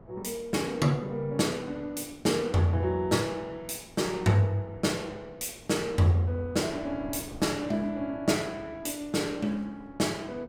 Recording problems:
wind on the microphone; below 520 Hz, SNR 22 dB

